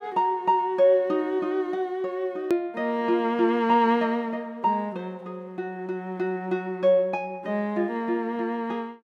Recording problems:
hard cut with a click; at 2.5 s

